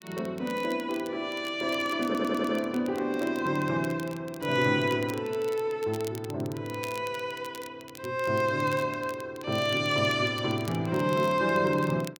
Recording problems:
crackling; vinyl, SNR 20 dB
stutter; at 2 s

